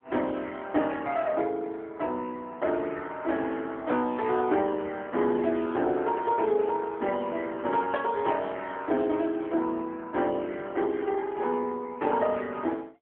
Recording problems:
phone line; 240 Hz to 3.3 kHz, AMR-NB

